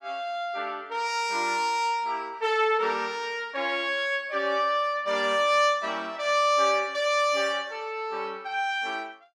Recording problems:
none

